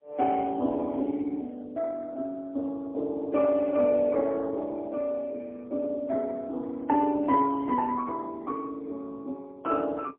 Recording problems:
telephone audio; 240 Hz to 2.6 kHz, AMR-NB, then MP3

